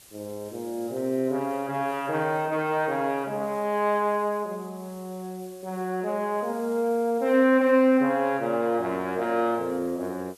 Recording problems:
hiss; slope -1 dB per octave, SNR 26 dB

